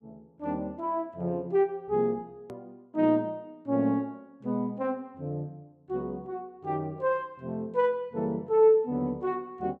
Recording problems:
hard cut with a click; at 2.5 s

